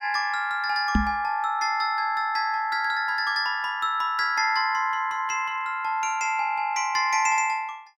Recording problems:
microphone thump; at 1 s; peak +5 dB vs average level

